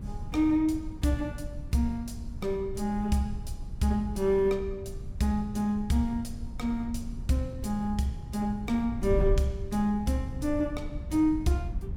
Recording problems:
wind noise; below 94 Hz, SNR 9 dB

